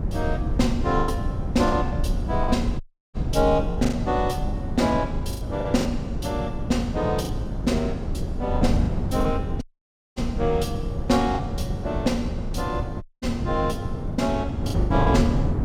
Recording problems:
rumble; below 80 Hz, SNR 9 dB
wind on the microphone; below 200 Hz, SNR 3 dB
packet loss; 7% of the sound replaced, filled with the last packet
audio cutting out; at 3 s, at 9.5 s for 0.5 s and at 13 s

